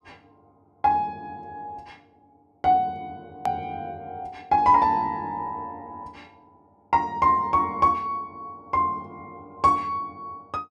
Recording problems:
hard cut with a click; at 3.5 s

